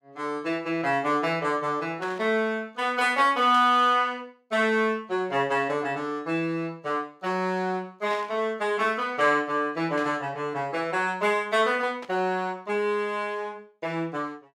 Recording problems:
static burst; 5 times, first at 2 s; peak -11 dB vs average level

